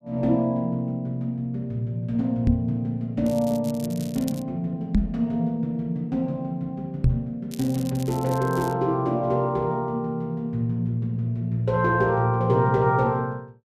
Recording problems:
microphone thump; at 2.5 s, at 5 s and at 7 s; peak +7 dB vs average level
crackle; from 3.5 to 4.5 s and from 7.5 to 8.5 s; loose cable, SNR 18 dB

